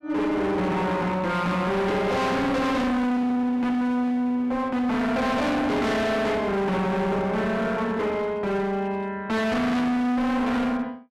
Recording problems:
distorted audio; hard clipping, signal-to-distortion ratio 6 dB

